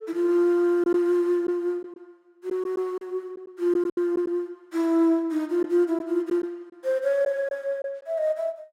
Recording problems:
lost packets; 4% of the sound replaced, filled with silence

